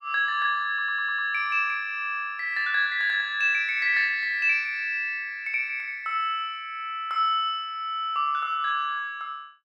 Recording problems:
stutter; at 0.5 s

